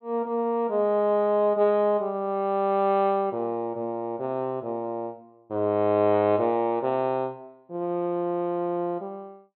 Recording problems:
low-pass filter; nothing above 4.1 kHz

